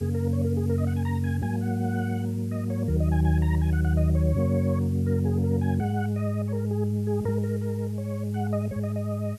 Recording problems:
hiss; slope +1 dB per octave, SNR 27 dB

